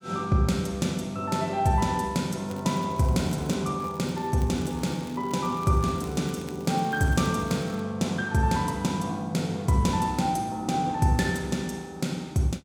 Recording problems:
crackle; from 2.5 to 3.5 s and from 4 to 8 s; loose cable, SNR 24 dB

